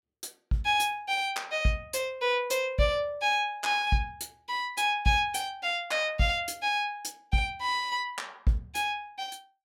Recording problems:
none

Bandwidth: 16.5 kHz